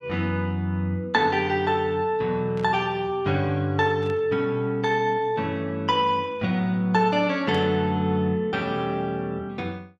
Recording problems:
burst of static; at 2.5 s, at 4 s and at 7.5 s; peak -16 dB vs average level

